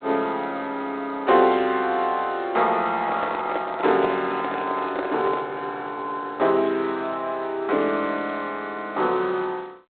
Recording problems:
telephone audio; 260 Hz to 3.9 kHz, G.726
handling noise; from 3 to 5.5 s; peak -1 dB vs average level

